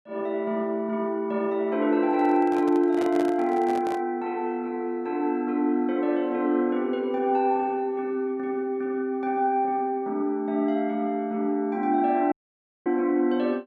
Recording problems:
handling noise; from 2 to 4 s; peak -5 dB vs average level
dropout; at 12 s for 0.5 s

